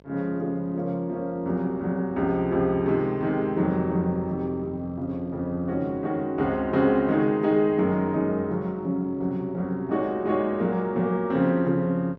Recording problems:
electrical hum; 50 Hz, harmonics up to 1.1 kHz, SNR 26 dB

